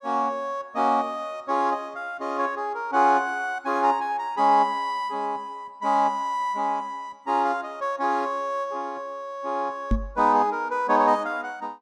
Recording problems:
microphone bump; at 10 s; peak +4 dB vs average level

